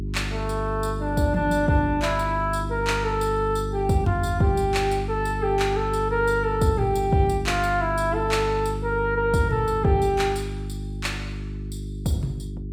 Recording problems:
electrical hum; 50 Hz, harmonics up to 400 Hz, SNR 7 dB

